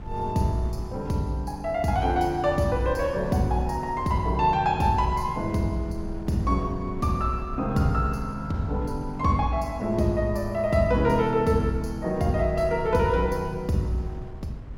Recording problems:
wind on the microphone; below 120 Hz, SNR 14 dB

